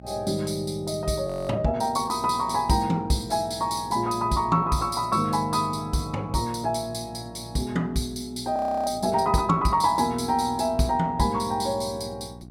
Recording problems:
electrical hum; 60 Hz, harmonics up to 780 Hz, SNR 20 dB
audio freezing; at 1.5 s and at 8.5 s

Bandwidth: 16 kHz